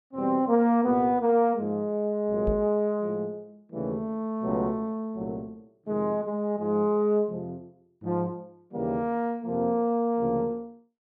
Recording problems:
microphone bump; at 2.5 s; peak -1 dB vs average level

